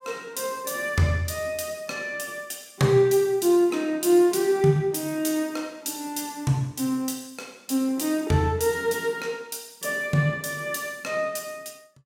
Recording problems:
none

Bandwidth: 16.5 kHz